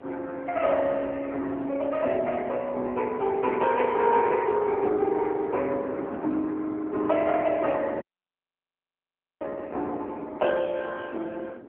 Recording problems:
phone line; 260 Hz to 3.1 kHz, AMR-NB
wind on the microphone; below 480 Hz, SNR 16 dB
dropout; at 8 s for 1.5 s

